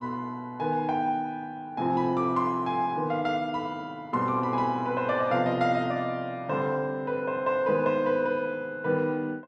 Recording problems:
none

